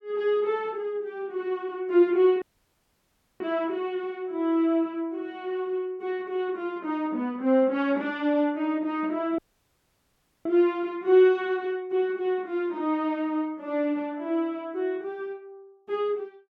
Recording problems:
audio cutting out; at 2.5 s for 1 s and at 9.5 s for 1 s

